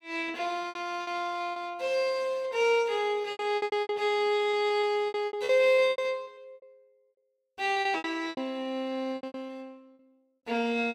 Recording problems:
lost packets; 16% of the sound replaced, filled with repeated pitch periods

